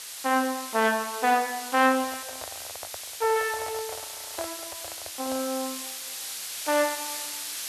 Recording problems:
hiss; slope +3 dB per octave, SNR 8 dB
microphone handling noise; from 2 to 5.5 s; peak -7 dB vs average level
audio freezing; at 4 s

